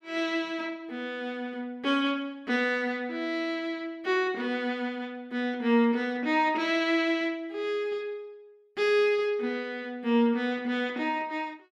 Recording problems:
none

